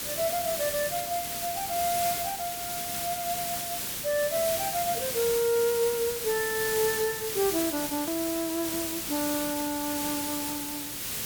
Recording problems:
hiss; SNR 1 dB
click at an edit; at 8 s

